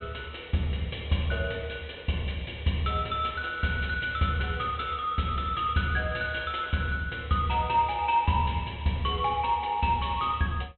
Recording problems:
treble cut off; nothing above 3.8 kHz

